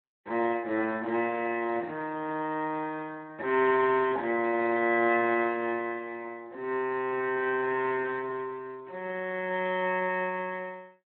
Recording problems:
phone line; 260 Hz to 3.3 kHz, Speex

